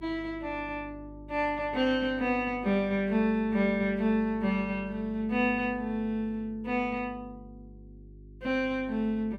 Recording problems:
hum; 50 Hz, harmonics up to 400 Hz, SNR 20 dB

